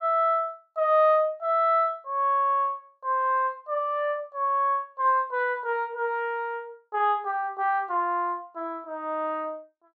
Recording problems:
none

